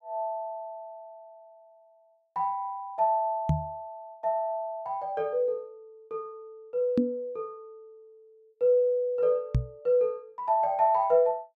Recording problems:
microphone bump; at 3.5 s, at 7 s and at 9.5 s; peak +7 dB vs average level

